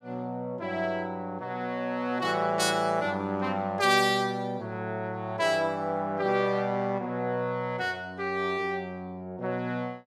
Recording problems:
none

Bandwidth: 15.5 kHz